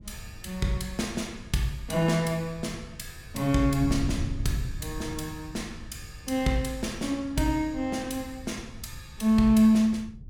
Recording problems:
wind on the microphone; below 110 Hz, SNR 14 dB

